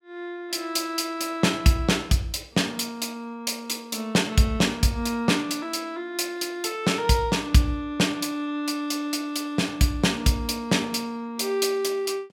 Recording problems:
none

